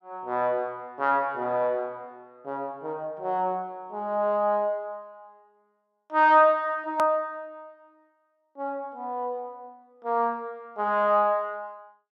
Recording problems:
click at an edit; at 7 s

